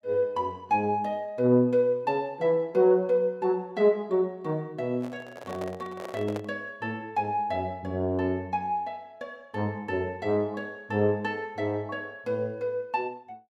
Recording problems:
microphone handling noise; from 5 to 6.5 s; peak -5 dB vs average level

